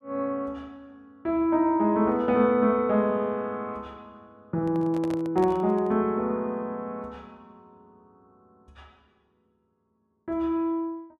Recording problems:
microphone handling noise; from 4.5 to 6 s; peak -8 dB vs average level

